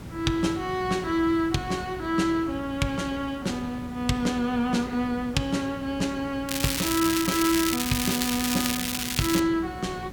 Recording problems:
electrical hum; 60 Hz, harmonics up to 540 Hz, SNR 19 dB
background hiss; slope -5 dB per octave, SNR 15 dB
crackling; from 6.5 to 9.5 s; loose cable, SNR 1 dB

